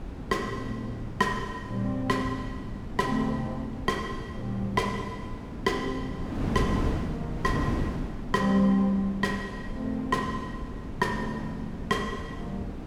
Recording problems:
wind noise; below 300 Hz, SNR 6 dB

